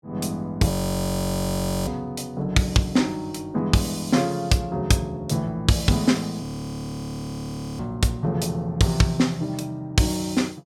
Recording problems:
frozen audio; at 0.5 s for 1 s and at 6.5 s for 1.5 s

